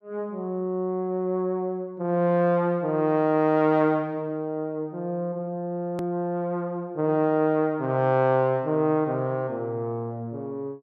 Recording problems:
click at an edit; at 6 s

